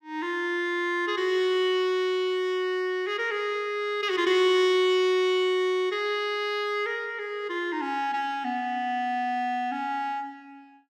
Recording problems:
none

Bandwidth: 14.5 kHz